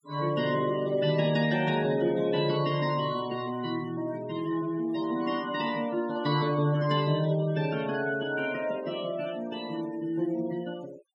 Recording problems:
denoising artefacts; signal-to-artefact ratio 18 dB

